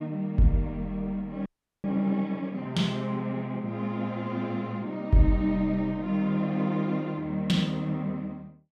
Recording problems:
audio freezing; at 1.5 s

